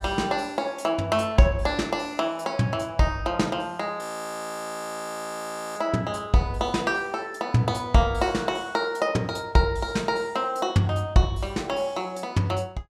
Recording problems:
audio freezing; at 4 s for 1.5 s

